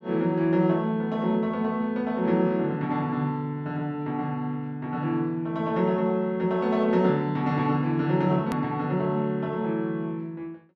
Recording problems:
click at an edit; at 8.5 s

